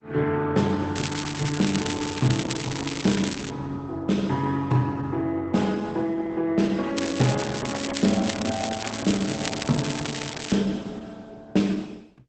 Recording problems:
codec artefacts; Opus, log-spectral distance 8 dB, nothing above 8 kHz
crackling; from 1 to 3.5 s and from 7 to 11 s; loose cable, SNR 7 dB

